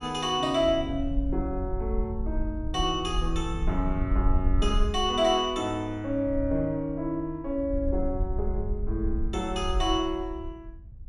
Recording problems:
wind noise; below 60 Hz, SNR 4 dB

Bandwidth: 13.5 kHz